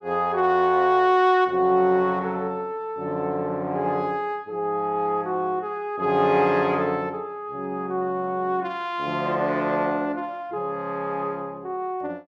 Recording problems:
none

